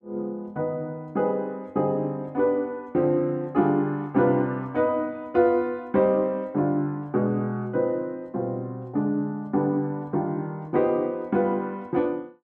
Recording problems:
none

